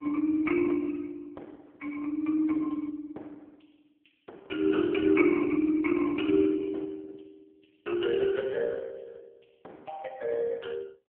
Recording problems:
telephone audio; 170 Hz to 2.6 kHz, AMR-NB

